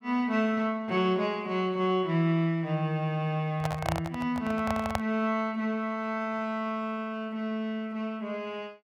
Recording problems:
microphone handling noise; from 3.5 to 5 s; peak +4 dB vs average level

